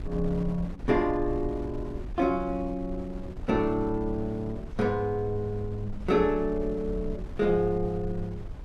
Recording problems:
wind noise; below 82 Hz, SNR 11 dB

